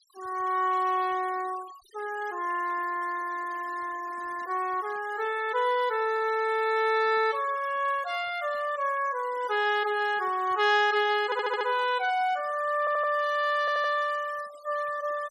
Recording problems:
denoising artefacts; signal-to-artefact ratio 21 dB
audio stuttering; at 11 s, at 13 s and at 14 s

